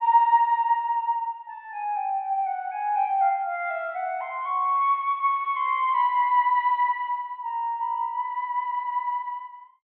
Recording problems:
treble cut off; nothing above 4 kHz

